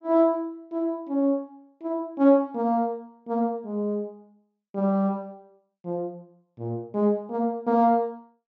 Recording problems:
low-pass filter; nothing above 8 kHz

